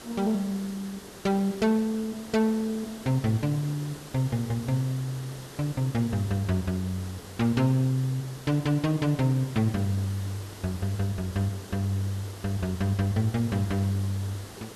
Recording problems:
hiss; SNR 15 dB

